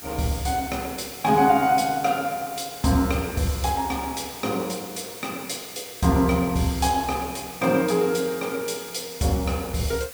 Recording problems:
background hiss; slope 0 dB per octave, SNR 14 dB

